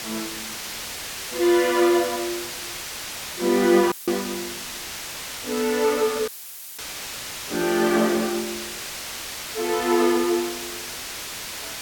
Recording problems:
hiss; slope 0 dB per octave, SNR 8 dB
dropout; at 4 s and at 6.5 s for 0.5 s; filled with static

